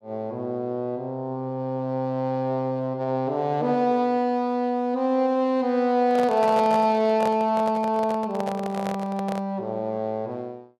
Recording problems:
microphone handling noise; from 6 to 9.5 s; peak -2 dB vs average level

